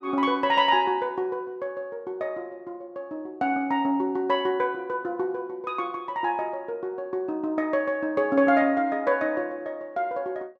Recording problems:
none

